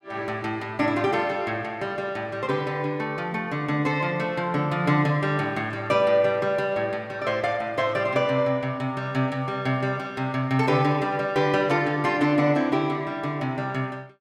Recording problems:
none

